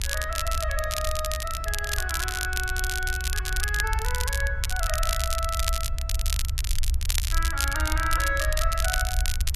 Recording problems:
background hiss; slope -7 dB per octave, SNR 26 dB
rumble; below 66 Hz, SNR 1 dB
crackling; vinyl, SNR 1 dB

